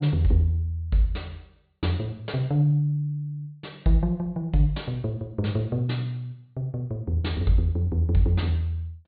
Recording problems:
treble cut off; nothing above 4.4 kHz

